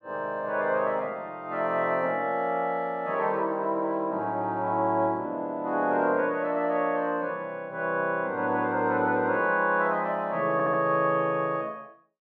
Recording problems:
audio stuttering; at 11 s

